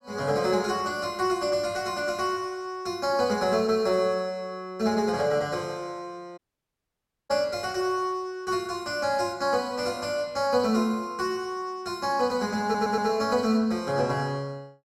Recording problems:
audio cutting out; at 6.5 s for 1 s
audio stuttering; at 13 s

